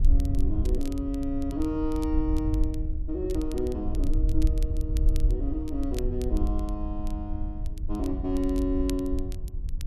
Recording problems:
wind on the microphone; below 62 Hz, SNR -1 dB
crackle; vinyl, SNR 19 dB

